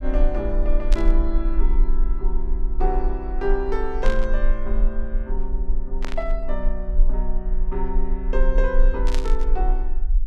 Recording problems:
rumble; below 34 Hz, strongest tone 22 Hz, SNR -4 dB
static burst; 4 times, first at 1 s; peak +1 dB vs average level

